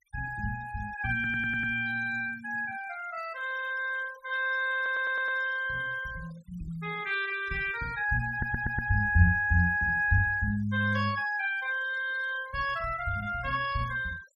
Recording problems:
noise reduction artefacts; signal-to-artefact ratio 21 dB
audio stuttering; at 1 s, at 5 s and at 8.5 s
static burst; at 11 s; peak -16 dB vs average level

